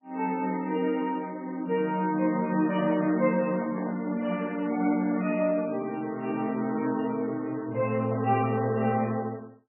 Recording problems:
codec artefacts; MP3, log-spectral distance 3 dB, nothing above 2.4 kHz
handling noise; from 2.5 to 5.5 s; peak -8 dB vs average level

